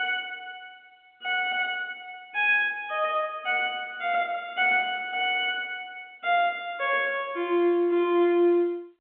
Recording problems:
telephone audio; 220 Hz to 3.4 kHz, G.711

